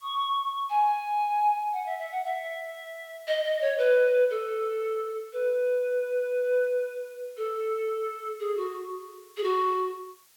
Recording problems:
background hiss; slope +2 dB per octave, SNR 29 dB

